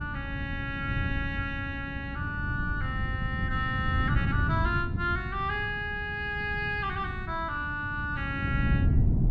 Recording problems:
wind on the microphone; below 160 Hz, SNR 0 dB

